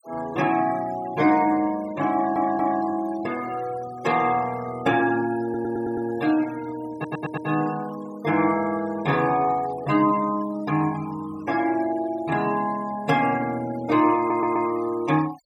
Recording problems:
noise reduction artefacts; signal-to-artefact ratio 18 dB
stutter; 4 times, first at 2 s

